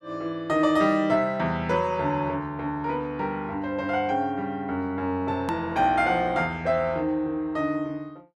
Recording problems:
hard cut with a click; at 5.5 s

